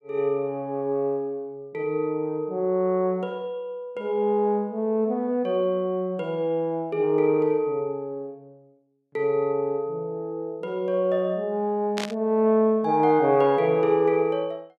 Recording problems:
burst of static; at 12 s; peak -3 dB vs average level

